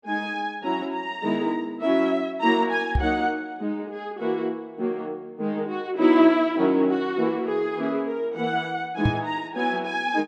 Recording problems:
microphone bump; at 3 s and at 9 s; peak +5 dB vs average level

